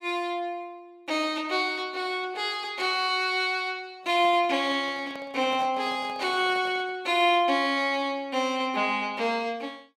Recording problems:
microphone handling noise; from 4 to 7 s; peak -11 dB vs average level

